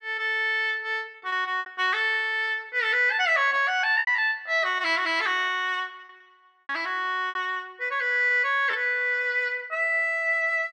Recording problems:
packet loss; 8% of the sound replaced, filled with repeated pitch periods

